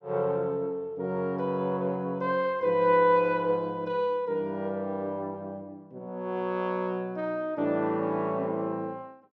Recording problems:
none

